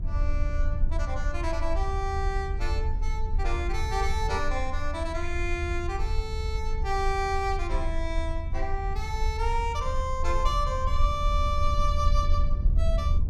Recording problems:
low-frequency rumble; below 74 Hz, SNR -1 dB

